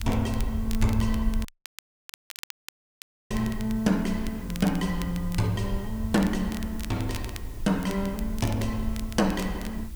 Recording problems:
electrical hum; 60 Hz, harmonics up to 360 Hz, SNR 24 dB
hiss; slope 0 dB per octave, SNR 21 dB
rumble; below 70 Hz, SNR 8 dB
crackling; vinyl, SNR 16 dB
audio cutting out; at 1.5 s for 2 s

